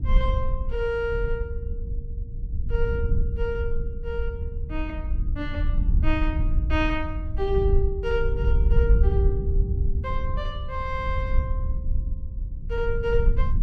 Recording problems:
low-frequency rumble; below 68 Hz, SNR -3 dB

